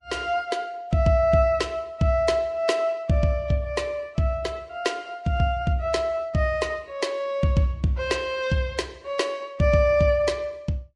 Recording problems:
codec artefacts; MP3, then Vorbis, log-spectral distance 2 dB, nothing above 10.7 kHz

